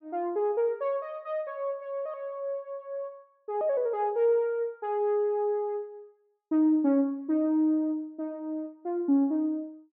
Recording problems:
none

